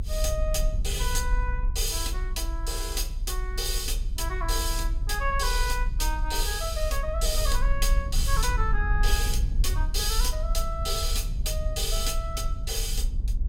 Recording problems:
low-frequency rumble; below 52 Hz, strongest tone 32 Hz, SNR 0 dB

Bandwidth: 16.5 kHz